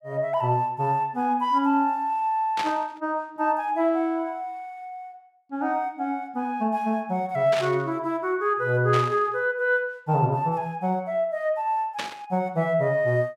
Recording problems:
static burst; 4 times, first at 2.5 s; peak -1 dB vs average level

